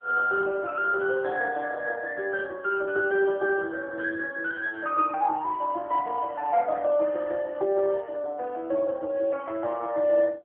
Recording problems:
telephone audio; 300 Hz to 3.1 kHz, AMR-NB

